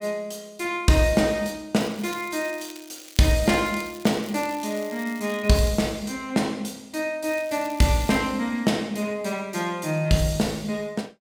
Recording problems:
crackle; from 2 to 5.5 s and at 7.5 s; loose cable, SNR 18 dB

